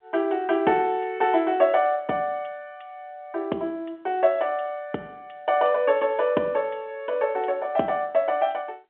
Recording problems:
phone line; 260 Hz to 3.6 kHz, G.711

